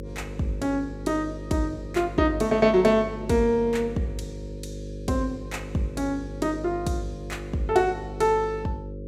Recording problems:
mains hum; 50 Hz, harmonics up to 550 Hz, SNR 12 dB

